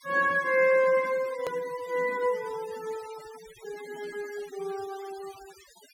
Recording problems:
denoising artefacts; signal-to-artefact ratio 20 dB
hard cut with a click; at 1.5 s

